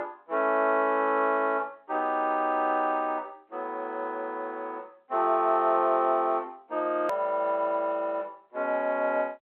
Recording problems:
phone line; 280 Hz to 3.2 kHz, G.711
click at an edit; at 7 s

